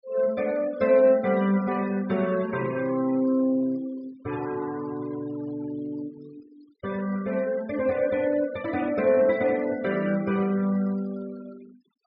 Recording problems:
treble missing; nothing above 5.5 kHz
denoising artefacts; signal-to-artefact ratio 20 dB

